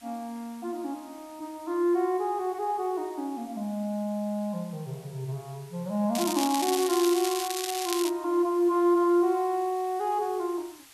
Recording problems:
hiss; slope +1 dB per octave, SNR 24 dB
crackling; from 6 to 8 s; loose cable, SNR 5 dB

